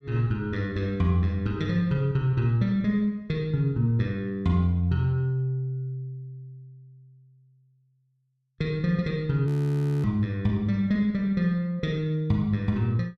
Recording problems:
frozen audio; at 9.5 s for 0.5 s

